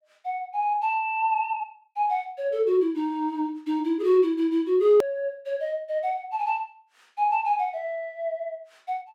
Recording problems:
click at an edit; at 5 s

